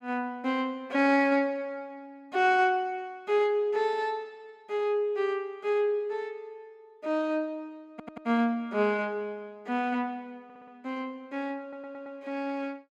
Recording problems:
stutter; at 8 s, at 10 s and at 12 s

